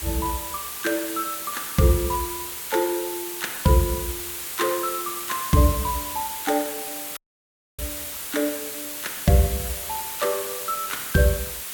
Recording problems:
background hiss; slope +1 dB per octave, SNR 5 dB
dropout; at 7 s for 0.5 s

